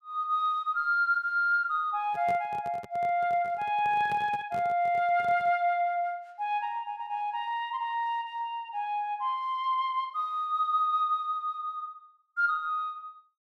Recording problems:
handling noise; from 2 to 5.5 s; peak -9 dB vs average level

